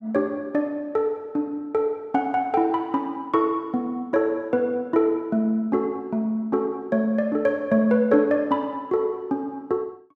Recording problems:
none

